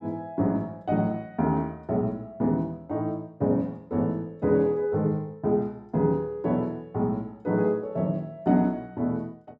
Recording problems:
none

